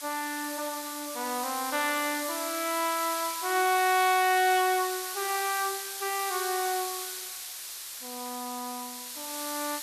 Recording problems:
background hiss; slope +4 dB per octave, SNR 6 dB

